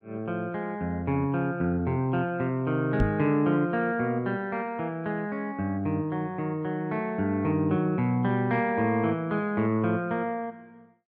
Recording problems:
knock on the microphone; at 3 s; peak +4 dB vs average level

